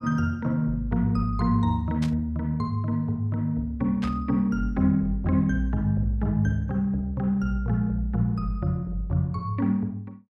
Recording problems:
static burst; at 2 s and at 4 s; peak -8 dB vs average level

